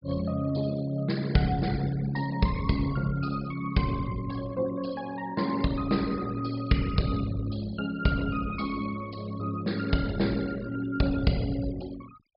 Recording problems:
treble cut off; nothing above 5.5 kHz
denoising artefacts; signal-to-artefact ratio 18 dB

